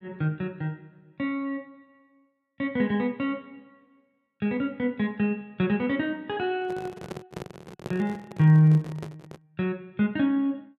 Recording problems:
microphone handling noise; from 6.5 to 9.5 s; peak -5 dB vs average level

